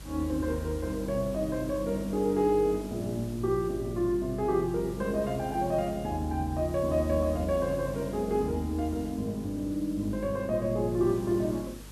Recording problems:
electrical hum; 50 Hz, harmonics up to 550 Hz, SNR 15 dB
background hiss; slope -3 dB per octave, SNR 20 dB

